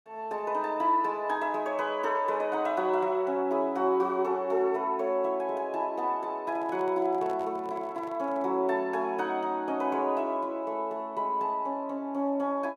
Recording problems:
handling noise; from 6.5 to 8.5 s; peak -12 dB vs average level

